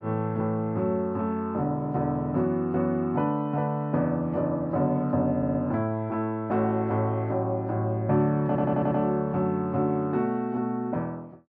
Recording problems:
audio stuttering; at 5.5 s and at 8.5 s

